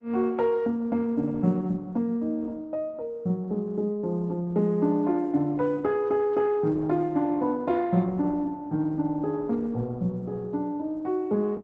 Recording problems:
codec artefacts; Opus, log-spectral distance 2 dB

